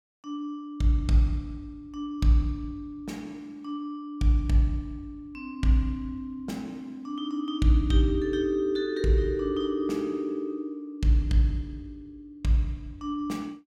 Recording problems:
none

